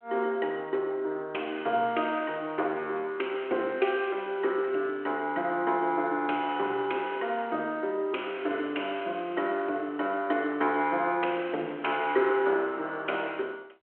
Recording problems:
telephone audio; 300 Hz to 3.3 kHz, G.726

